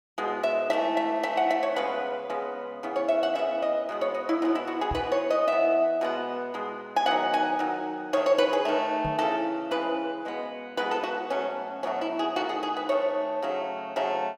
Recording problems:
microphone bump; at 5 s and at 9 s; peak -4 dB vs average level

